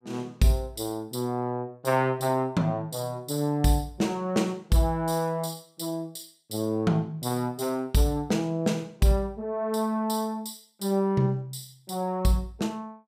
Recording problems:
none

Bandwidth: 15.5 kHz